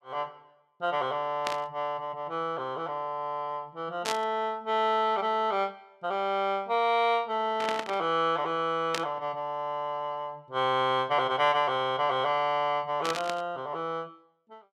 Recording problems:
static burst; 5 times, first at 1.5 s; peak +2 dB vs average level

